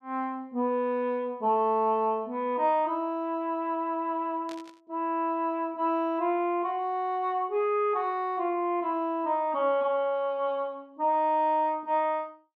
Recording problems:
burst of static; at 4.5 s; peak -14 dB vs average level

